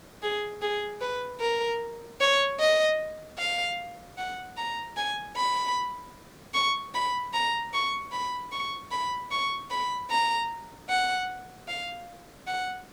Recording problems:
hiss; slope -5 dB per octave, SNR 22 dB

